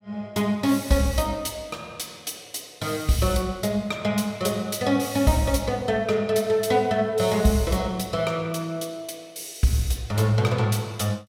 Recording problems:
none

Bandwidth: 16.5 kHz